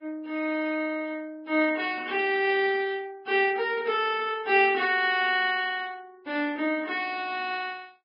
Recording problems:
treble missing; nothing above 4.8 kHz
codec artefacts; Vorbis, log-spectral distance 2 dB

